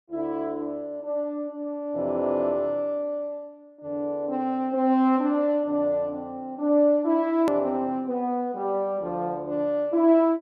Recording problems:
click at an edit; at 7.5 s

